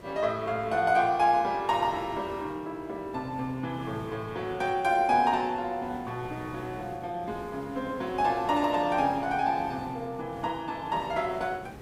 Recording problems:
hiss; slope -7 dB per octave, SNR 17 dB

